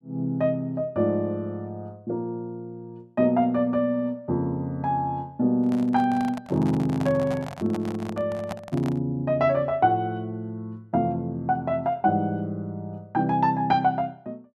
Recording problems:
handling noise; from 5.5 to 9 s; peak -4 dB vs average level

